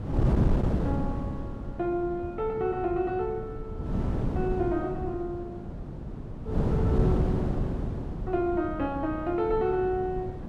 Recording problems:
wind on the microphone; below 240 Hz, SNR 1 dB

